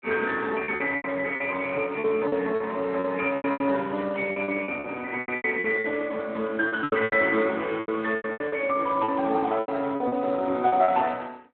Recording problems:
phone line; 190 Hz to 4 kHz, Speex
packet loss; 15% of the sound replaced, filled with repeated pitch periods

